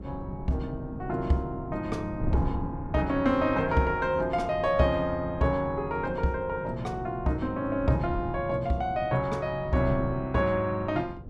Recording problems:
wind on the microphone; below 210 Hz, SNR 11 dB

